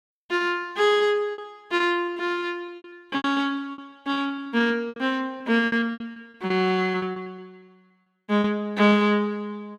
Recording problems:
packet loss; 14% of the sound replaced, filled with repeated pitch periods

